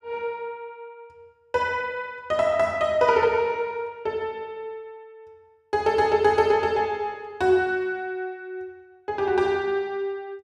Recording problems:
none

